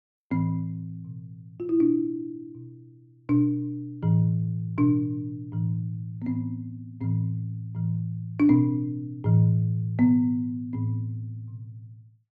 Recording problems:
none

